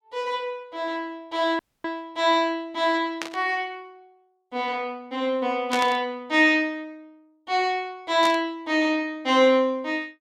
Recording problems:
dropout; at 1.5 s
static burst; at 3 s, at 5.5 s and at 8 s; peak -2 dB vs average level

